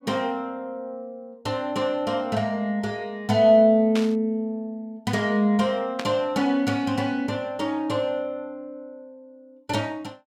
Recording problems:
static burst; at 4 s and at 6 s; peak -3 dB vs average level

